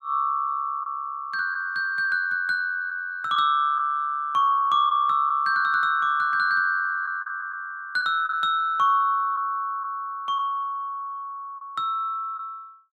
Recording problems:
lost packets; 2% of the sound replaced, filled with the last packet

